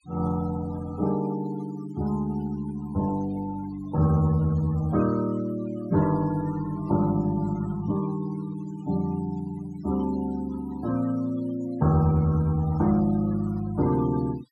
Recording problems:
noise reduction artefacts; signal-to-artefact ratio 18 dB

